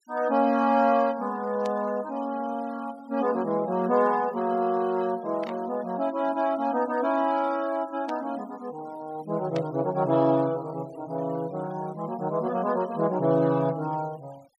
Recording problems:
noise reduction artefacts; signal-to-artefact ratio 24 dB
burst of static; 4 times, first at 1.5 s; peak -9 dB vs average level

